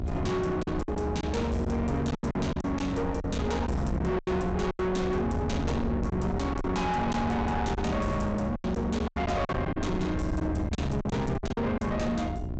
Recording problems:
low-pass filter; nothing above 8 kHz
distorted audio; soft clipping, signal-to-distortion ratio 8 dB
hum; 60 Hz, harmonics up to 1.4 kHz, SNR 11 dB
low-frequency rumble; below 250 Hz, SNR 5 dB
lost packets; 9% of the sound replaced, filled with silence

